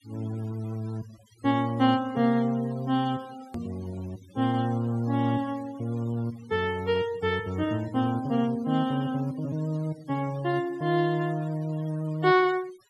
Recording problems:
noise reduction artefacts; signal-to-artefact ratio 22 dB
click at an edit; at 3.5 s

